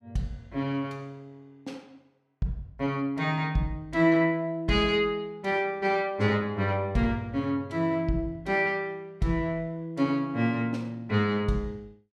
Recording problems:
none

